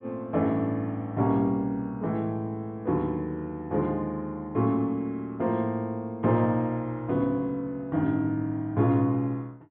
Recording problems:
treble missing; nothing above 4 kHz

